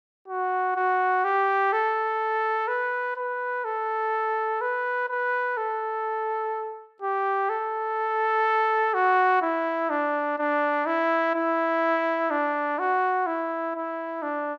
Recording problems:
none

